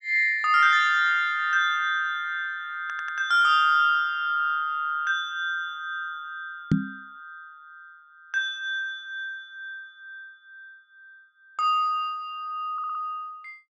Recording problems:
audio stuttering; at 3 s and at 13 s
microphone thump; at 6.5 s; peak +6 dB vs average level

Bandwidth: 8.5 kHz